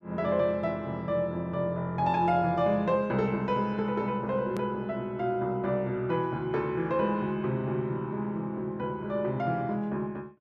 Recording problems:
edit click; at 4.5 s

